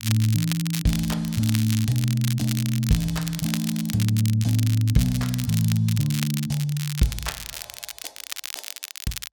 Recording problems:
crackling; vinyl, SNR 9 dB

